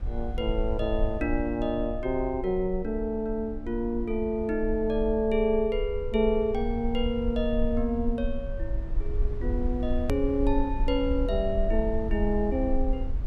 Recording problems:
rumble; below 52 Hz, SNR 6 dB
click at an edit; at 10 s

